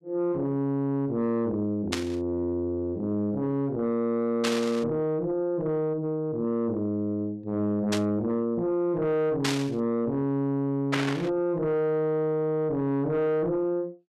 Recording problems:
distorted audio; soft clipping, signal-to-distortion ratio 10 dB
burst of static; 5 times, first at 2 s; peak +3 dB vs average level

